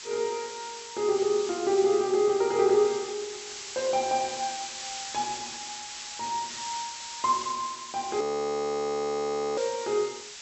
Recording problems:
treble cut off; nothing above 7.9 kHz
hiss; slope +3 dB per octave, SNR 9 dB
frozen audio; at 8 s for 1.5 s

